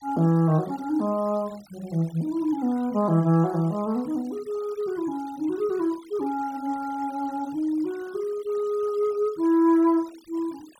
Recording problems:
denoising artefacts; signal-to-artefact ratio 25 dB

